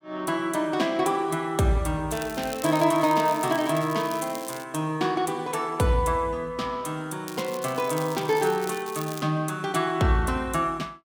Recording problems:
crackling; from 2 to 4.5 s and from 7.5 to 9 s; loose cable, SNR 15 dB

